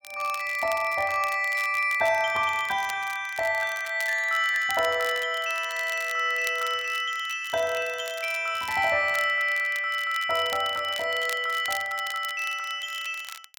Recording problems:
crackling; vinyl, SNR 16 dB

